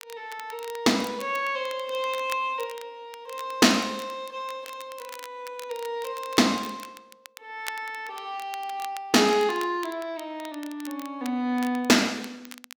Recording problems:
crackle; vinyl, SNR 18 dB

